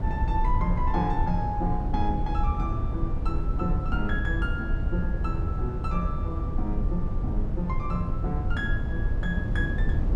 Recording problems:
low-frequency rumble; below 94 Hz, SNR -3 dB

